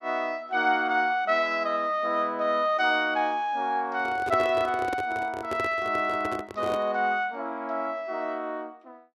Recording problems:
handling noise; from 4 to 7 s; peak -1 dB vs average level

